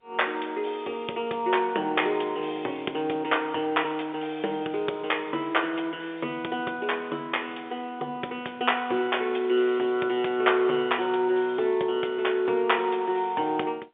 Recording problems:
phone line; 300 Hz to 3.6 kHz, G.711

